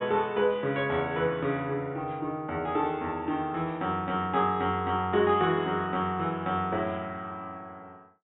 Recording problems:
low-pass filter; nothing above 3.7 kHz

